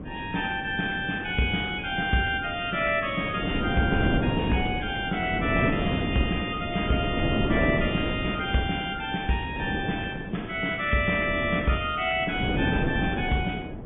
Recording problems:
treble cut off; nothing above 3.2 kHz
codec artefacts; Vorbis, log-spectral distance 3 dB
wind on the microphone; below 390 Hz, SNR 4 dB

